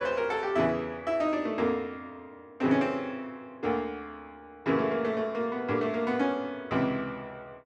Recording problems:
none

